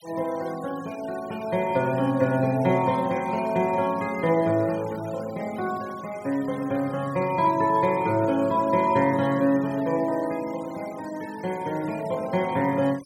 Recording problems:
noise reduction artefacts; signal-to-artefact ratio 21 dB

